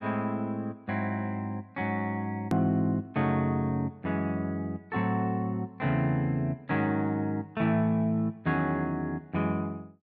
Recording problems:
edit click; at 2.5 s

